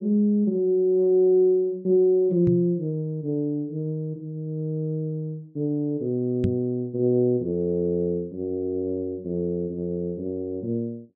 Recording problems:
microphone bump; at 2.5 s and at 6.5 s; peak +2 dB vs average level

